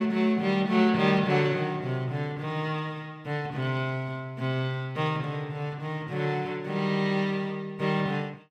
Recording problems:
none

